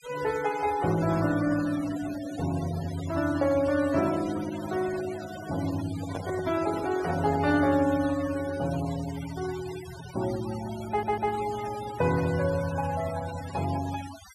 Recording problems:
noise reduction artefacts; signal-to-artefact ratio 13 dB
handling noise; from 6 to 7.5 s; peak -4 dB vs average level
stutter; at 11 s

